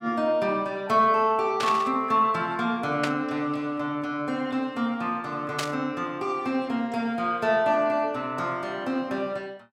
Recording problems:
burst of static; at 1.5 s, at 3 s and at 5.5 s; peak +1 dB vs average level

